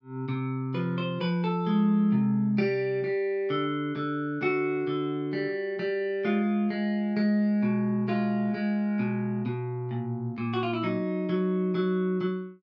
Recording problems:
none

